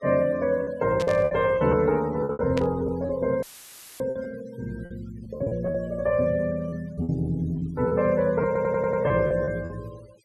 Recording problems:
denoising artefacts; signal-to-artefact ratio 23 dB
packet loss; 9% of the sound replaced, filled with repeated pitch periods
burst of static; at 1 s and at 2.5 s; peak -5 dB vs average level
dropout; at 3.5 s for 0.5 s; filled with static
audio stuttering; at 8.5 s

